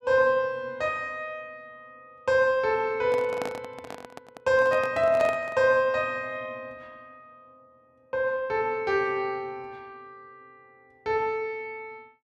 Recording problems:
microphone handling noise; from 3 to 5.5 s; peak -3 dB vs average level

